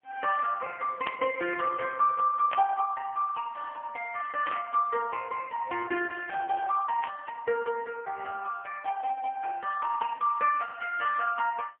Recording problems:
telephone audio; 300 Hz to 3.1 kHz, AMR-NB, then MP3
static burst; 4 times, first at 1 s; peak 0 dB vs average level

